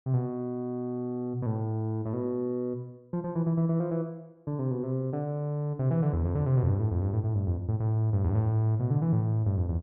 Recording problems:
none

